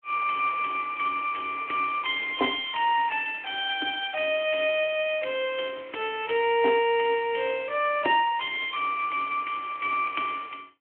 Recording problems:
phone line; 260 Hz to 3.2 kHz, Speex

